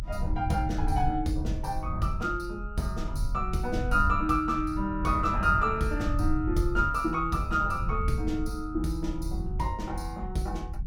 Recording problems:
rumble; below 86 Hz, SNR 5 dB

